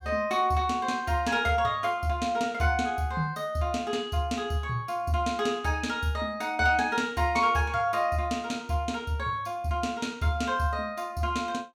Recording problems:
none

